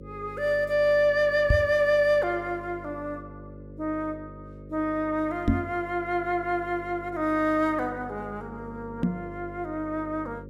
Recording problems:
hum; 50 Hz, harmonics up to 550 Hz, SNR 17 dB
knock on the microphone; at 1.5 s, at 5.5 s and at 9 s; peak +7 dB vs average level

